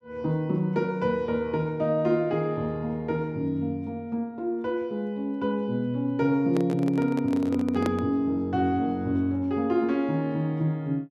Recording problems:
handling noise; from 6.5 to 8 s; peak +1 dB vs average level

